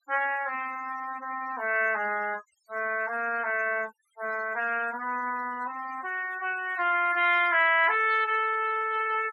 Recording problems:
denoising artefacts; signal-to-artefact ratio 19 dB

